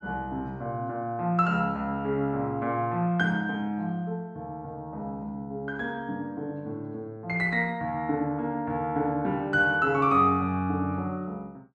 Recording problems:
none

